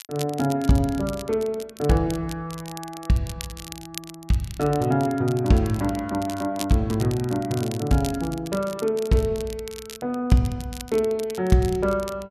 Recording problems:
crackling; vinyl, SNR 16 dB

